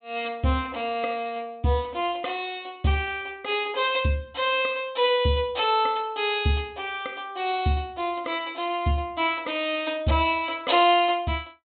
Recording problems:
treble cut off; nothing above 4 kHz

